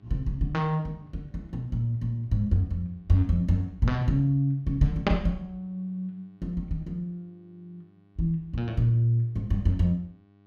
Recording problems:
hum; 50 Hz, harmonics up to 1.2 kHz, SNR 31 dB

